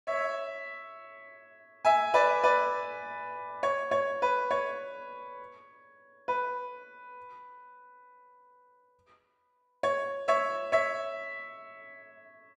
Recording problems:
none

